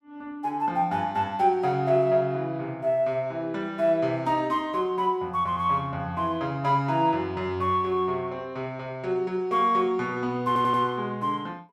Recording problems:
stutter; at 10 s

